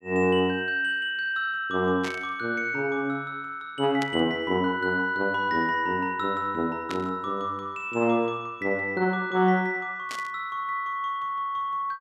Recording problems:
static burst; 4 times, first at 2 s; peak -5 dB vs average level

